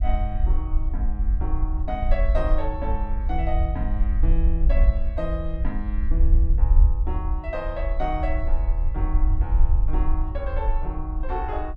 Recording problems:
low-frequency rumble; below 54 Hz, SNR -7 dB

